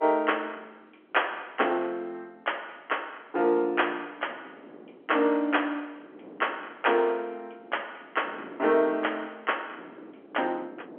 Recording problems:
phone line; 260 Hz to 3.3 kHz, G.711
wind on the microphone; below 530 Hz, SNR 21 dB

